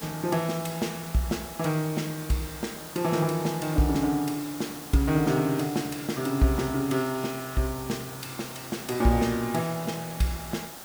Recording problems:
background hiss; SNR 12 dB

